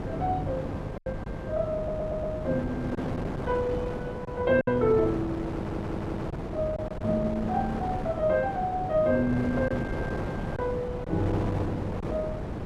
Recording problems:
mains hum; 50 Hz, harmonics up to 500 Hz, SNR 16 dB
wind on the microphone; below 560 Hz, SNR 5 dB
packet loss; 3% of the sound replaced, filled with silence
audio stuttering; at 2 s and at 5.5 s

